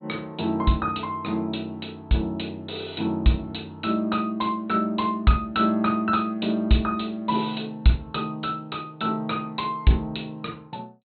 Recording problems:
low-pass filter; nothing above 4.2 kHz

